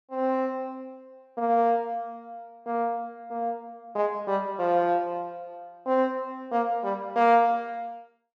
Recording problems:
none

